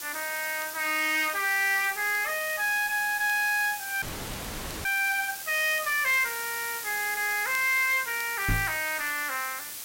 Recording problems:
distorted audio; soft clipping, signal-to-distortion ratio 11 dB
background hiss; slope +1 dB per octave, SNR 9 dB
crackle; vinyl, SNR 25 dB
frozen audio; at 4 s for 1 s
microphone thump; at 8.5 s; peak +2 dB vs average level

